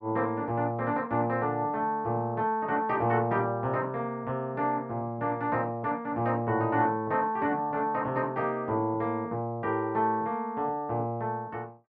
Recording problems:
none

